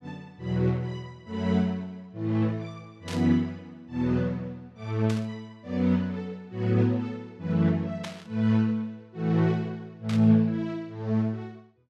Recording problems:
burst of static; 4 times, first at 3 s; peak -6 dB vs average level

